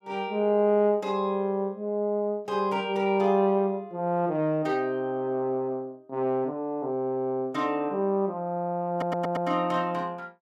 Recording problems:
stutter; at 9 s

